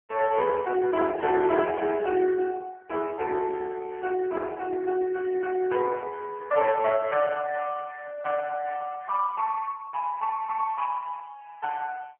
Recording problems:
telephone audio; 130 Hz to 3.1 kHz, AMR-NB

